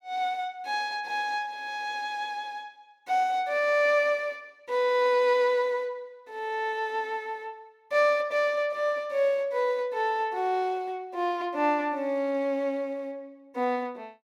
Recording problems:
none

